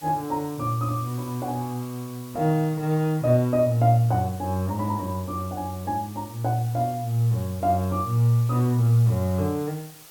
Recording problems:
hiss; slope 0 dB per octave, SNR 20 dB

